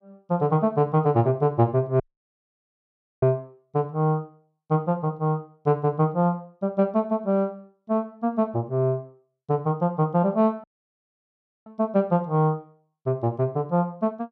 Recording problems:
audio cutting out; at 2 s for 1 s and at 11 s for 1 s

